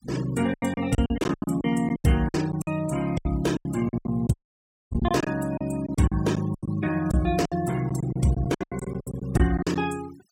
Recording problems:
noise reduction artefacts; signal-to-artefact ratio 18 dB
packet loss; 18% of the sound replaced, filled with silence
audio cutting out; at 4.5 s for 0.5 s

